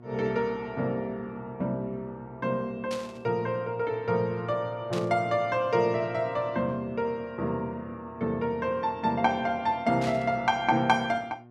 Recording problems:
hum; 60 Hz, harmonics up to 1.4 kHz, SNR 22 dB
burst of static; at 3 s, at 5 s and at 10 s; peak -6 dB vs average level

